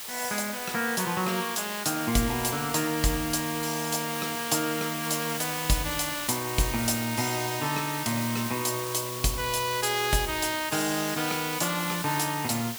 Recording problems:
hiss; slope +1 dB per octave, SNR 6 dB

